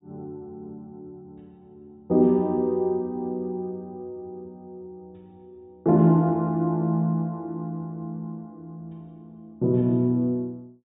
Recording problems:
treble missing; nothing above 4 kHz

